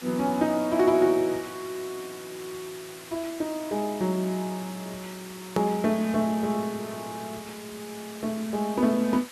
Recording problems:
background hiss; slope 0 dB per octave, SNR 15 dB
hard cut with a click; at 5.5 s

